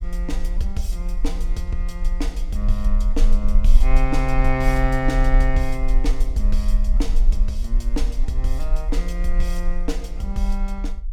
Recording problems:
rumble; below 38 Hz, strongest tone 22 Hz, SNR -4 dB

